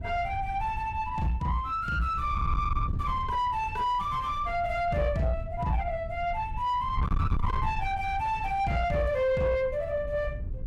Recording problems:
distortion; soft clipping, signal-to-distortion ratio 7 dB
wind on the microphone; below 110 Hz, SNR 6 dB

